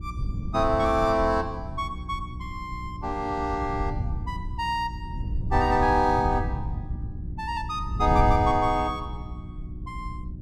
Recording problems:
hum; 60 Hz, harmonics up to 360 Hz, SNR 15 dB
wind noise; below 110 Hz, SNR 7 dB

